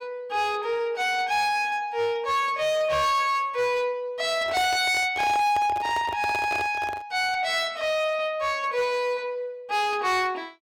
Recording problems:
distorted audio; hard clipping, signal-to-distortion ratio 11 dB
handling noise; from 4.5 to 7 s; peak -4 dB vs average level

